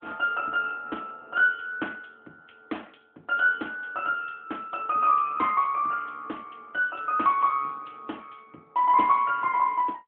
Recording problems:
phone line; 260 Hz to 3.4 kHz, AMR-NB

